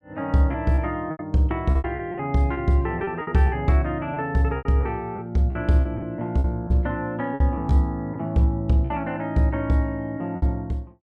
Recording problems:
packet loss; 9% of the sound replaced, filled with repeated pitch periods

